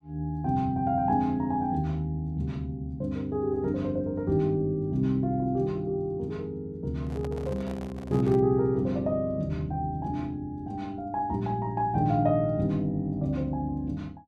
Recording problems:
handling noise; from 7 to 8.5 s; peak -10 dB vs average level

